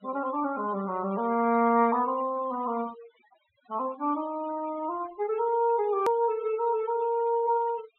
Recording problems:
low-pass filter; nothing above 3.9 kHz
denoising artefacts; signal-to-artefact ratio 19 dB
edit click; at 6 s

